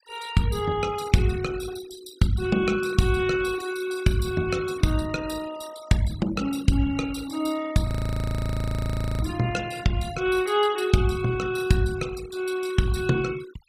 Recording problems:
denoising artefacts; signal-to-artefact ratio 16 dB
audio freezing; at 8 s for 1.5 s

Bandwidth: 15.5 kHz